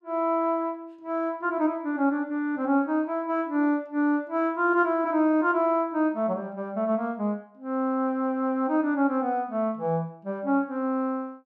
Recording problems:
none

